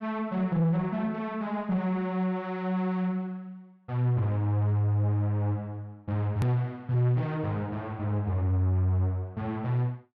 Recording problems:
distorted audio; soft clipping, signal-to-distortion ratio 11 dB
hard cut with a click; at 6.5 s

